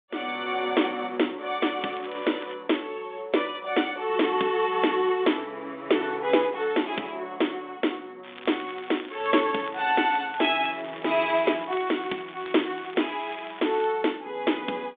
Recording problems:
phone line; 220 Hz to 3.6 kHz, G.726
crackle; at 2 s, from 8 to 11 s and from 11 to 14 s; loose cable, SNR 18 dB

